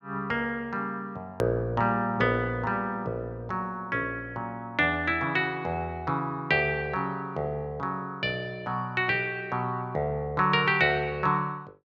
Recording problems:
edit click; at 1.5 s

